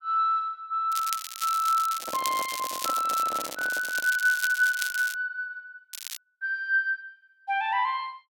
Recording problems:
crackling; from 1 to 5 s and at 6 s; loose cable, SNR 9 dB
microphone handling noise; from 2 to 4 s; peak -6 dB vs average level

